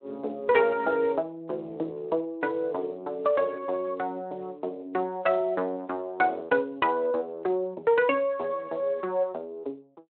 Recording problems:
phone line; 240 Hz to 3.2 kHz, Speex

